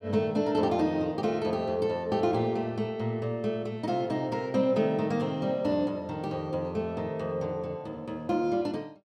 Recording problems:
none

